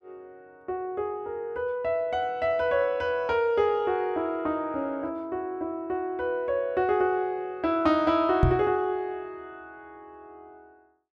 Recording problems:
knock on the microphone; at 8.5 s; peak +8 dB vs average level

